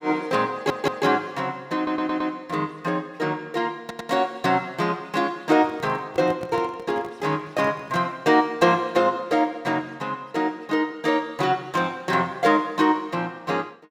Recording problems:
stutter; at 0.5 s, at 2 s and at 4 s
handling noise; from 5.5 to 8 s; peak -8 dB vs average level

